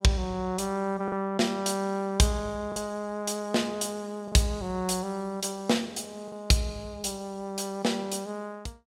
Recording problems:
lost packets; 1.8% of the sound replaced, filled with the last packet

